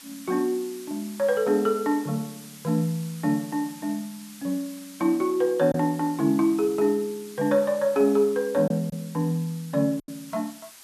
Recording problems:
background hiss; slope +2 dB per octave, SNR 19 dB
lost packets; 1.3% of the sound replaced, filled with silence

